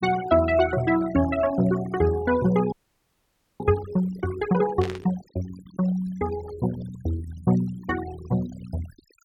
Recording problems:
denoising artefacts; signal-to-artefact ratio 16 dB
frozen audio; at 2.5 s for 1 s
static burst; at 5 s; peak -7 dB vs average level

